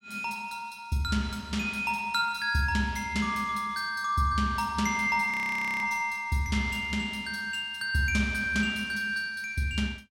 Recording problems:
frozen audio; at 5.5 s for 0.5 s

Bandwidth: 16 kHz